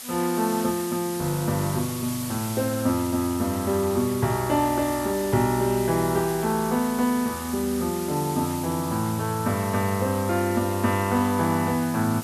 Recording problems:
hiss; slope +2 dB per octave, SNR 11 dB

